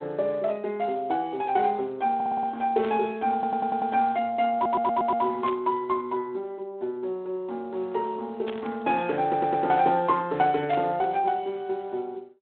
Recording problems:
phone line; 240 Hz to 4 kHz, Speex
stutter; 4 times, first at 2 s
static burst; 4 times, first at 3 s; peak -6 dB vs average level

